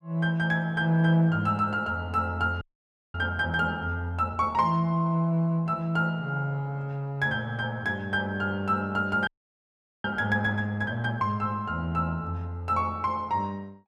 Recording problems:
audio freezing; at 2.5 s for 0.5 s and at 9.5 s for 1 s

